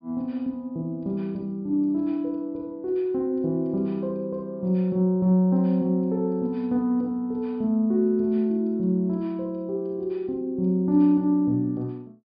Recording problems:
treble missing; nothing above 5.5 kHz

